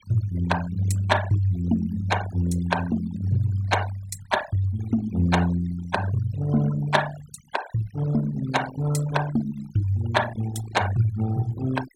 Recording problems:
noise reduction artefacts; signal-to-artefact ratio 14 dB

